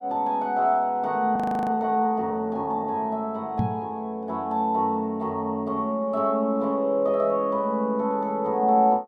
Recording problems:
audio freezing; at 1.5 s
microphone bump; at 3.5 s; peak +3 dB vs average level

